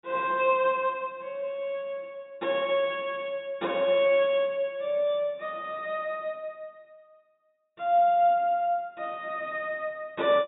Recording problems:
treble cut off; nothing above 4 kHz

